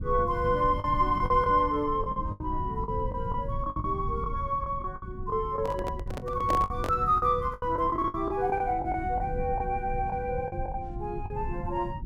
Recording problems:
rumble; below 130 Hz, SNR 9 dB
packet loss; 12% of the sound replaced, filled with the last packet
microphone handling noise; from 5.5 to 7 s; peak +2 dB vs average level

